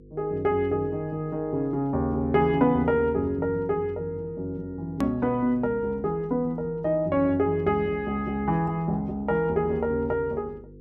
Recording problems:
hum; 50 Hz, harmonics up to 500 Hz, SNR 21 dB
hard cut with a click; at 5 s

